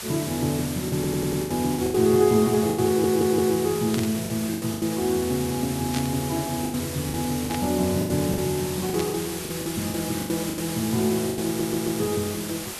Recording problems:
hiss; slope -1 dB per octave, SNR 8 dB
lost packets; 11% of the sound replaced, filled with the last packet
stutter; at 1 s, at 3 s and at 11 s
burst of static; 4 times, first at 4 s; peak -4 dB vs average level

